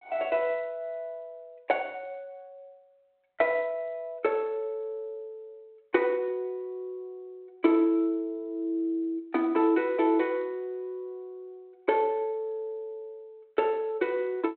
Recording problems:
telephone audio; 260 Hz to 3.3 kHz, G.726

